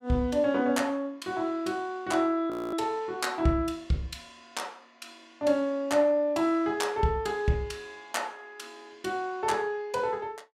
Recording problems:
frozen audio; at 2.5 s

